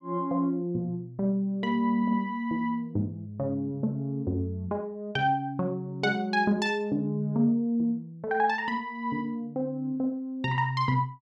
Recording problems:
none

